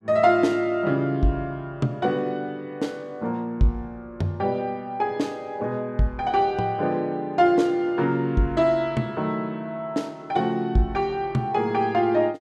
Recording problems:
none

